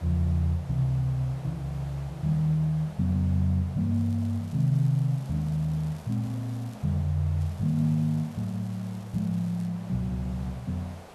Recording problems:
background hiss; SNR 20 dB
crackle; from 4 to 7 s and from 7.5 to 9.5 s; loose cable, SNR 29 dB

